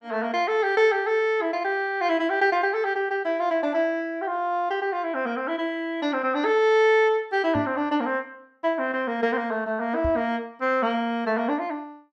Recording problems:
microphone bump; at 7.5 s and at 10 s; peak -4 dB vs average level

